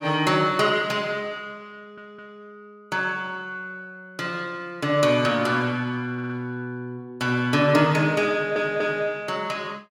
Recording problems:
audio stuttering; at 2 s, at 6 s and at 8.5 s

